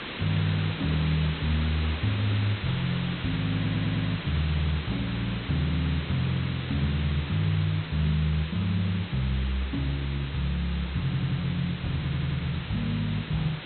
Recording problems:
treble missing; nothing above 4.1 kHz
hiss; SNR 8 dB
stutter; at 3.5 s, at 11 s and at 12 s

